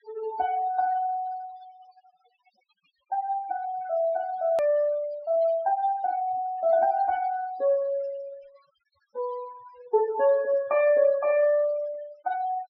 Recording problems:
treble cut off; nothing above 5.5 kHz
noise reduction artefacts; signal-to-artefact ratio 20 dB
edit click; at 4.5 s

